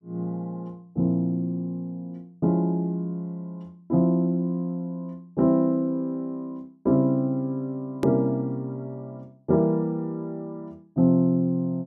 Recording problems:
click at an edit; at 8 s

